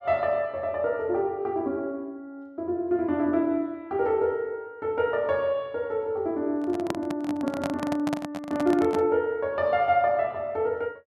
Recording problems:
handling noise; from 6.5 to 9 s; peak 0 dB vs average level

